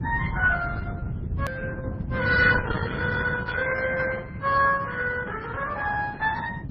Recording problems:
lossy compression; Opus, then MP3, log-spectral distance 4 dB, nothing above 4.5 kHz
rumble; below 180 Hz, SNR 7 dB
hard cut with a click; at 1.5 s

